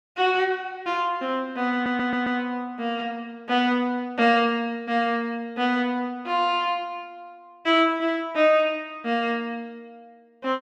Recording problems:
stutter; at 1.5 s

